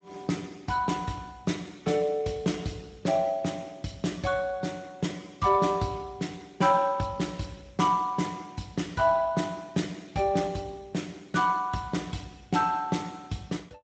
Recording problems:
lossy compression; Speex, log-spectral distance 4 dB, nothing above 7.8 kHz

